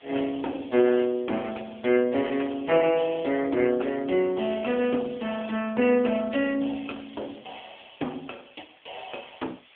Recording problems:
telephone audio; 220 Hz to 3.4 kHz, AMR-NB
hiss; SNR 27 dB

